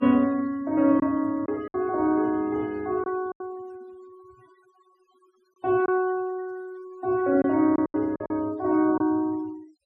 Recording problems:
denoising artefacts; signal-to-artefact ratio 27 dB
packet loss; 5% of the sound replaced, filled with silence

